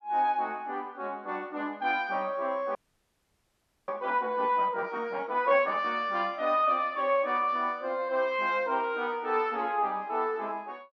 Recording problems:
audio freezing; at 3 s for 1 s

